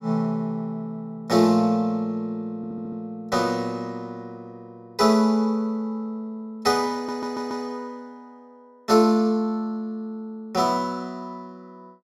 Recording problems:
stutter; at 2.5 s and at 7 s

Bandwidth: 16.5 kHz